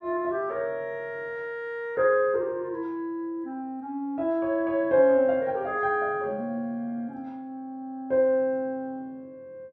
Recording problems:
none

